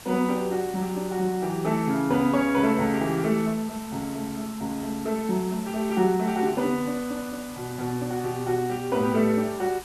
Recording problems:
hiss; SNR 16 dB

